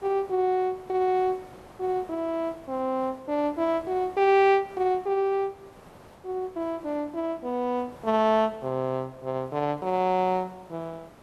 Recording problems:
background hiss; SNR 23 dB

